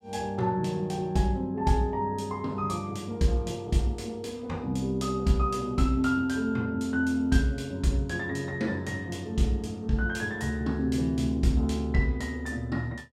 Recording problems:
none

